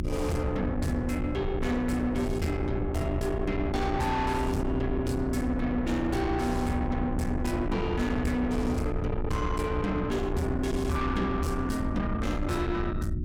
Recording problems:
distorted audio; soft clipping, signal-to-distortion ratio 7 dB
hum; 60 Hz, harmonics up to 360 Hz, SNR 8 dB
rumble; below 290 Hz, SNR 4 dB

